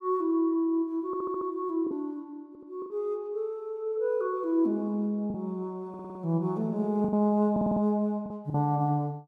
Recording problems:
lost packets; 4% of the sound replaced, filled with the last packet
stutter; 4 times, first at 1 s

